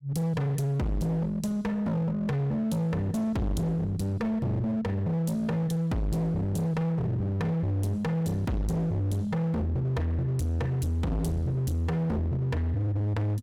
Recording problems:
distortion; hard clipping, uneven, signal-to-distortion ratio 5 dB

